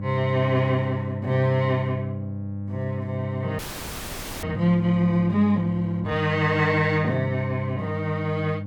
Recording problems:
hum; 50 Hz, harmonics up to 600 Hz, SNR 7 dB
audio freezing; at 3.5 s for 1 s

